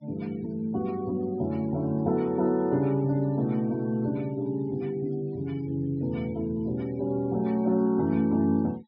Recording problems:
treble cut off; nothing above 5.5 kHz
noise reduction artefacts; signal-to-artefact ratio 28 dB

